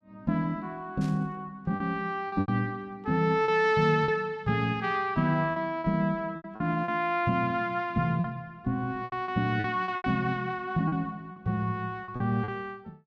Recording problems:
lost packets; 8% of the sound replaced, filled with repeated pitch periods
burst of static; at 1 s; peak -15 dB vs average level

